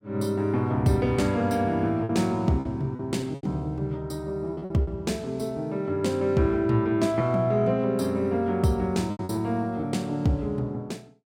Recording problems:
packet loss; 5% of the sound replaced, filled with repeated pitch periods

